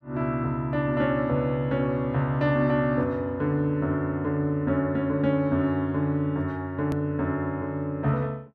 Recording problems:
click at an edit; at 7 s

